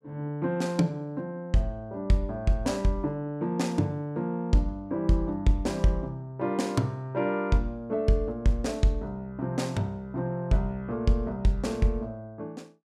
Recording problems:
none

